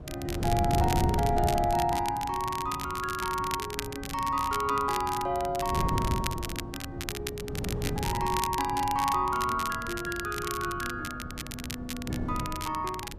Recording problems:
wind noise; below 220 Hz, SNR 6 dB
crackling; vinyl, SNR 8 dB

